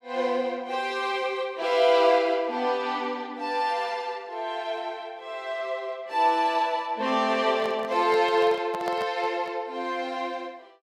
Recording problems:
microphone handling noise; from 7.5 to 9.5 s; peak -4 dB vs average level

